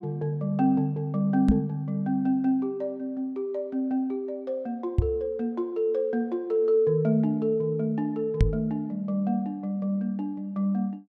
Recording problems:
knock on the microphone; at 1.5 s, at 5 s and at 8.5 s; peak +9 dB vs average level

